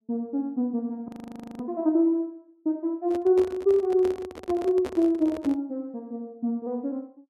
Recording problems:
frozen audio; at 1 s for 0.5 s
handling noise; from 3 to 5.5 s; peak -5 dB vs average level

